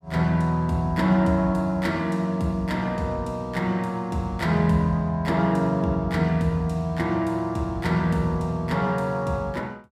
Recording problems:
none

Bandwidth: 15.5 kHz